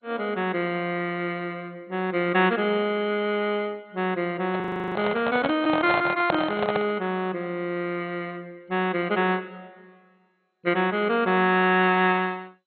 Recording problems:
lossy codec; MP2, log-spectral distance 3 dB, nothing above 4 kHz
microphone handling noise; from 4.5 to 7 s; peak +3 dB vs average level
frozen audio; at 4.5 s

